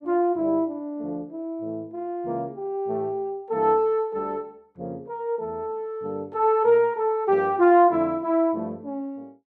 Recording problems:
none

